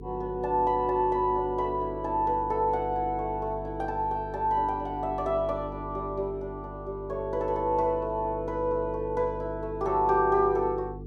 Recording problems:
hum; 50 Hz, harmonics up to 450 Hz, SNR 13 dB

